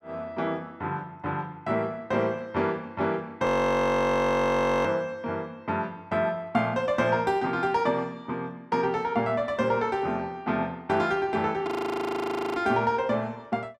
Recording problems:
audio freezing; at 3.5 s for 1.5 s and at 12 s for 1 s

